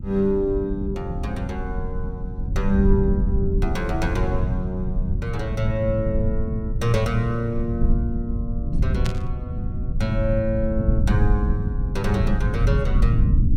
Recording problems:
low-frequency rumble; below 110 Hz, SNR -1 dB
burst of static; at 9 s; peak -2 dB vs average level

